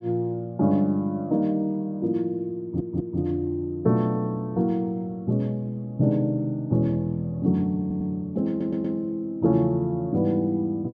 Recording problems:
stutter; at 2.5 s, at 8 s and at 8.5 s

